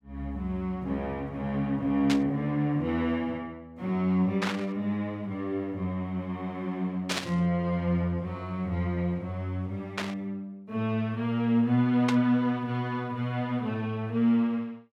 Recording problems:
static burst; 5 times, first at 2 s; peak +3 dB vs average level

